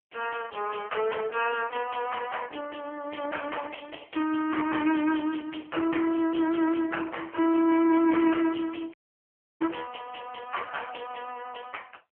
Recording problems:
phone line; 260 Hz to 3.2 kHz, AMR-NB
distorted audio; hard clipping, signal-to-distortion ratio 11 dB
dropout; at 9 s for 0.5 s

